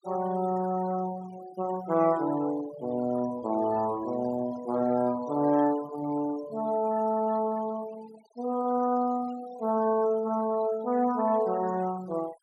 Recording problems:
denoising artefacts; signal-to-artefact ratio 19 dB

